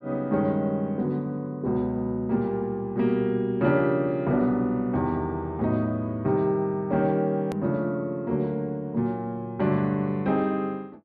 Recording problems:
treble missing; nothing above 5.5 kHz
click at an edit; at 7.5 s

